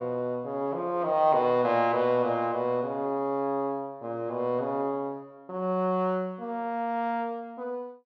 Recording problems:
none

